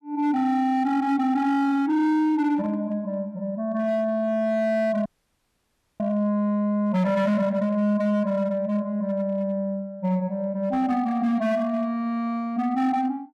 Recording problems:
distortion; hard clipping, signal-to-distortion ratio 12 dB
audio freezing; at 5 s for 1 s

